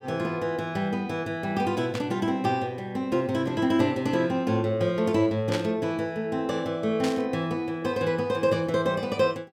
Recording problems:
burst of static; at 2 s, at 5.5 s and at 7 s; peak -2 dB vs average level

